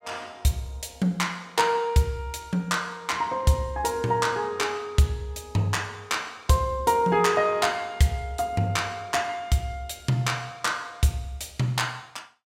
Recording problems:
none

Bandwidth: 16 kHz